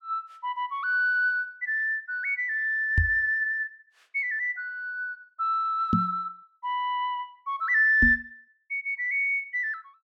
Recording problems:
microphone thump; at 3 s, at 6 s and at 8 s; peak +5 dB vs average level

